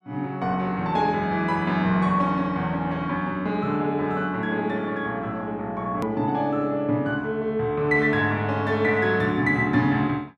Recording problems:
click at an edit; at 6 s

